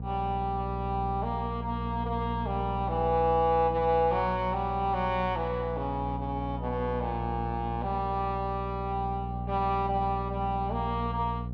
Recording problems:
hum; 60 Hz, harmonics up to 540 Hz, SNR 6 dB

